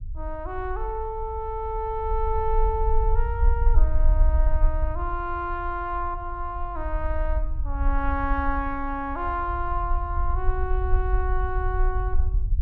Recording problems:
rumble; below 54 Hz, strongest tone 24 Hz, SNR -1 dB

